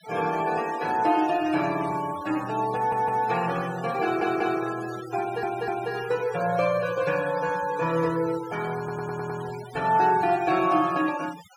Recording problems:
noise reduction artefacts; signal-to-artefact ratio 15 dB
audio stuttering; 4 times, first at 3 s

